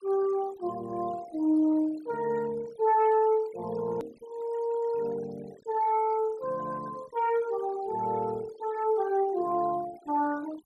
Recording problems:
denoising artefacts; signal-to-artefact ratio 20 dB
hard cut with a click; at 4 s

